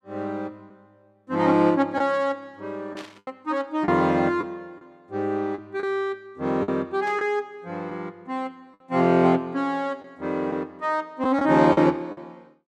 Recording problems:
packet loss; 4% of the sound replaced, filled with the last packet
static burst; at 3 s and at 7 s; peak -12 dB vs average level

